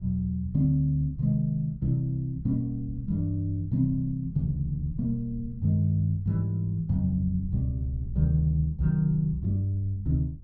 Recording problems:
wind on the microphone; below 94 Hz, SNR 17 dB

